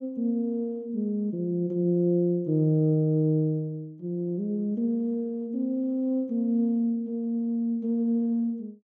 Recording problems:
none

